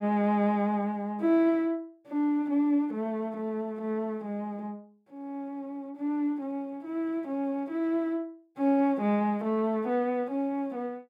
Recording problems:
none

